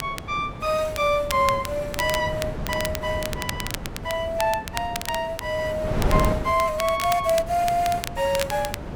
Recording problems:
wind on the microphone; below 450 Hz, SNR 8 dB
crackling; vinyl, SNR 10 dB

